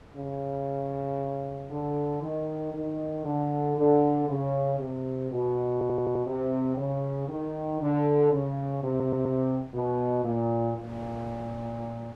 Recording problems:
wind noise; below 810 Hz, SNR 22 dB
audio stuttering; at 5.5 s and at 9 s

